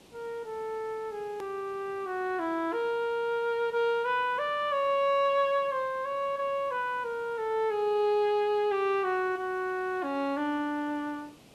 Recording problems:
background hiss; SNR 25 dB
click at an edit; at 1.5 s

